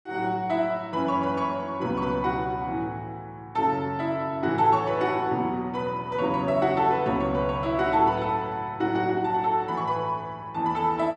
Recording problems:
none

